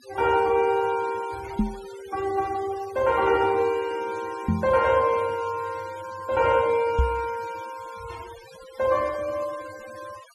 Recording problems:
noise reduction artefacts; signal-to-artefact ratio 20 dB
knock on the microphone; at 1.5 s, at 4.5 s and at 7 s; peak +5 dB vs average level

